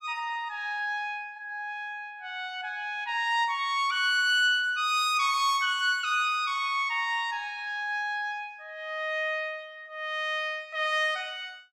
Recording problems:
none

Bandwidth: 15 kHz